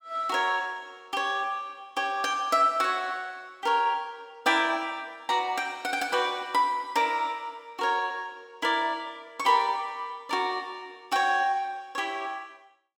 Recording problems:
none

